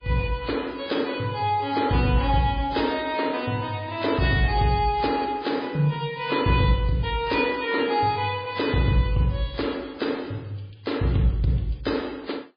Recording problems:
lossy codec; MP3, then AAC, log-spectral distance 5 dB, nothing above 4.6 kHz

